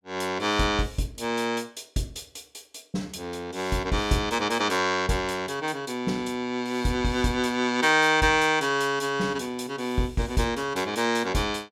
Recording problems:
none

